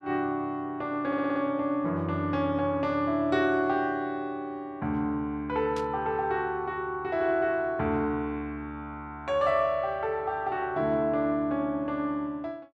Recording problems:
stutter; at 1 s
static burst; at 6 s; peak -10 dB vs average level

